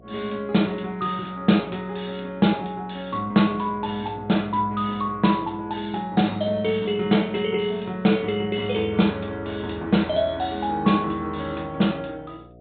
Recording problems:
treble missing; nothing above 4 kHz
hum; 60 Hz, harmonics up to 720 Hz, SNR 23 dB

